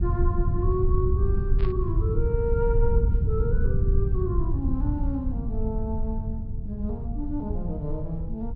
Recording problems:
low-pass filter; nothing above 5.5 kHz
low-frequency rumble; below 92 Hz, SNR -4 dB
static burst; at 1.5 s; peak -8 dB vs average level

